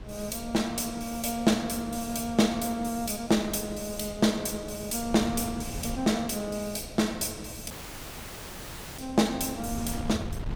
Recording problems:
wind on the microphone; below 240 Hz, SNR 14 dB
audio cutting out; at 7.5 s for 1.5 s

